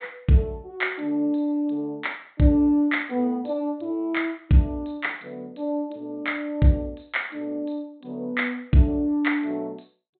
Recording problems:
treble cut off; nothing above 4 kHz

